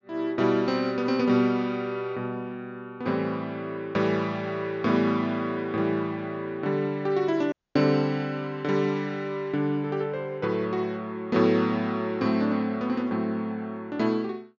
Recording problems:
treble cut off; nothing above 6.9 kHz
audio cutting out; at 7.5 s

